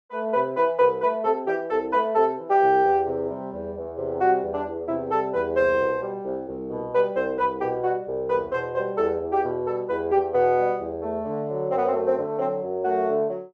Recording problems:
none

